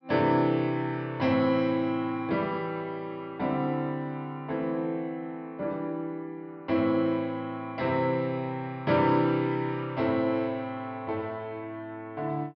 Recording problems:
low-pass filter; nothing above 5.5 kHz

